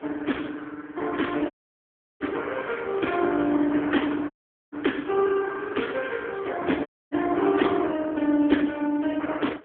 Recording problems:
telephone audio; 220 Hz to 3.4 kHz, AMR-NB
wind noise; below 1.2 kHz, SNR 25 dB
dropout; at 1.5 s for 0.5 s, at 4.5 s and at 7 s

